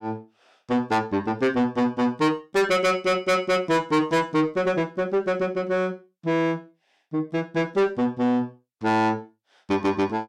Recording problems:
distorted audio; soft clipping, signal-to-distortion ratio 7 dB

